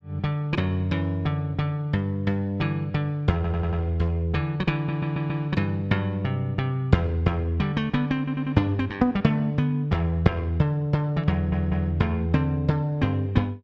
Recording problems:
audio stuttering; 4 times, first at 3.5 s

